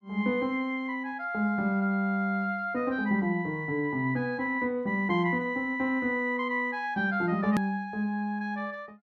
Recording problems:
hard cut with a click; at 7.5 s

